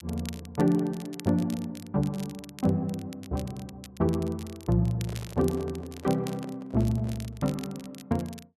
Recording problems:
crackling; vinyl, SNR 18 dB
handling noise; from 5 to 7.5 s; peak -10 dB vs average level

